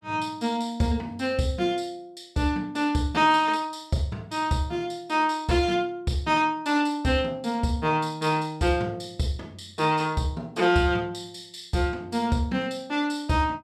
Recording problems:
none

